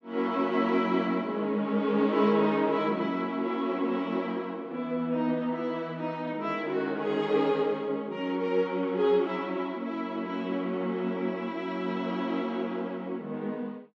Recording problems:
none

